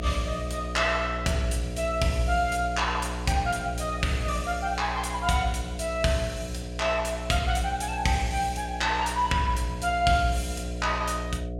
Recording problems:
hum; 60 Hz, harmonics up to 720 Hz, SNR 8 dB

